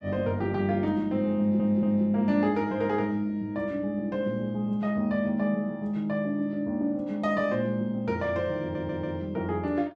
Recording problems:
stutter; at 1.5 s and at 8.5 s

